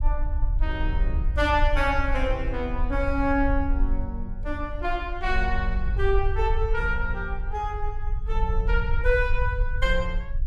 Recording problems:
rumble; below 56 Hz, SNR 1 dB

